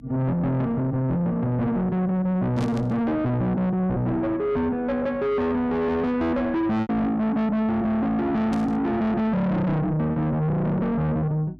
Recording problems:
distortion; soft clipping, signal-to-distortion ratio 6 dB
electrical hum; 50 Hz, harmonics up to 300 Hz, SNR 24 dB
packet loss; 1.7% of the sound replaced, filled with repeated pitch periods
burst of static; at 2.5 s and at 8.5 s; peak -13 dB vs average level

